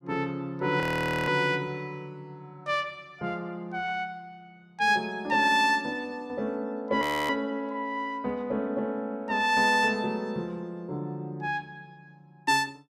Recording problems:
frozen audio; at 1 s and at 7 s

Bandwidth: 15.5 kHz